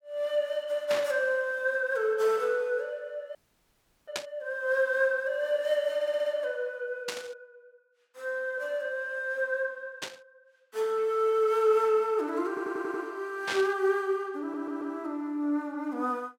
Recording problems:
static burst; 5 times, first at 1 s; peak +1 dB vs average level
audio cutting out; at 3.5 s for 0.5 s
audio stuttering; at 6 s, at 12 s and at 14 s

